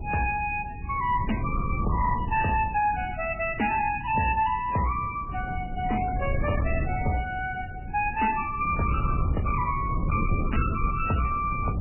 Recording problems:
codec artefacts; MP3, log-spectral distance 5 dB, nothing above 2.7 kHz
distorted audio; hard clipping, uneven, signal-to-distortion ratio 11 dB
wind noise; below 160 Hz, SNR 5 dB

